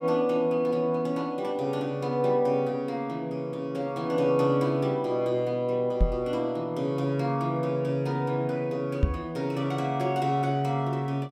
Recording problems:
microphone thump; at 6 s and at 9 s; peak +7 dB vs average level

